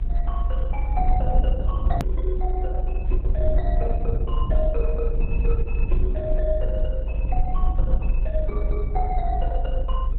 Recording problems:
lossy codec; Opus, log-spectral distance 2 dB, nothing above 4 kHz
rumble; below 54 Hz, strongest tone 28 Hz, SNR -7 dB
edit click; at 2 s

